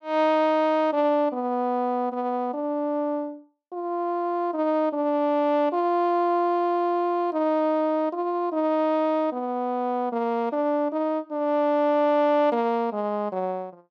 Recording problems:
none

